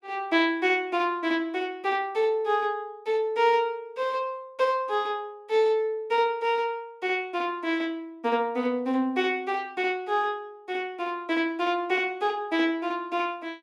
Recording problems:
none

